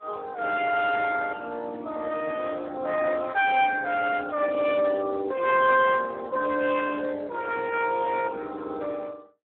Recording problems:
telephone audio; 260 Hz to 3.5 kHz, Speex

